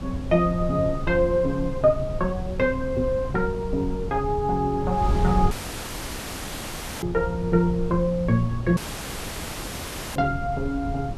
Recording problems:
wind on the microphone; below 130 Hz, SNR 8 dB
audio cutting out; at 5.5 s for 1.5 s and at 9 s for 1.5 s

